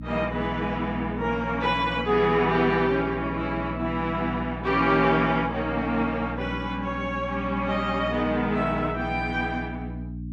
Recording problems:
electrical hum; 60 Hz, harmonics up to 300 Hz, SNR 10 dB

